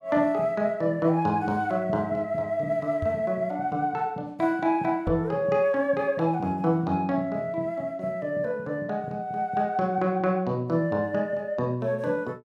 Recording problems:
microphone bump; at 3 s and at 5 s; peak -1 dB vs average level

